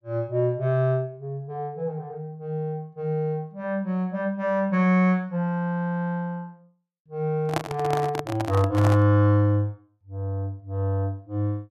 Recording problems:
microphone handling noise; from 7.5 to 9 s; peak +3 dB vs average level

